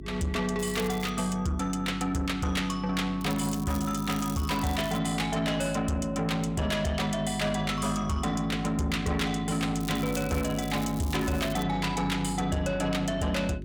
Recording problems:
distortion; soft clipping, signal-to-distortion ratio 10 dB
hum; 50 Hz, harmonics up to 400 Hz, SNR 12 dB
crackle; at 0.5 s, from 3 to 5 s and from 10 to 12 s; loose cable, SNR 14 dB

